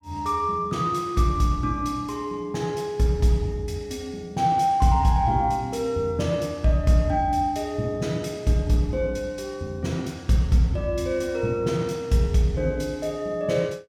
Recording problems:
none

